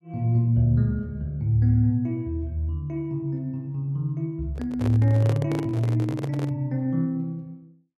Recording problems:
microphone handling noise; from 4.5 to 6.5 s; peak -3 dB vs average level

